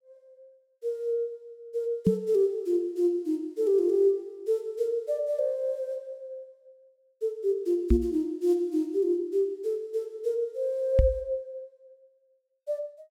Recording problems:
knock on the microphone; at 2 s, at 8 s and at 11 s; peak +9 dB vs average level

